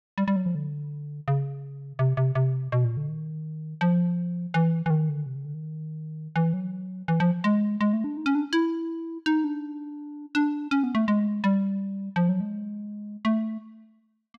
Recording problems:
none

